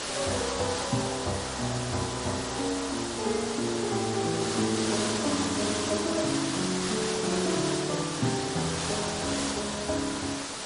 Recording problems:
codec artefacts; MP3, log-spectral distance 13 dB
hiss; slope -2 dB per octave, SNR 1 dB

